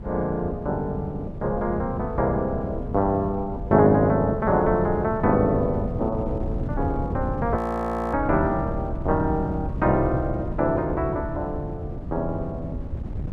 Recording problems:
wind on the microphone; below 170 Hz, SNR 8 dB
frozen audio; at 7.5 s for 0.5 s

